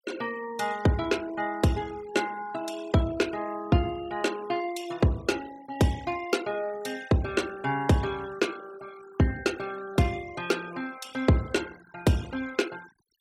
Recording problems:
denoising artefacts; signal-to-artefact ratio 17 dB

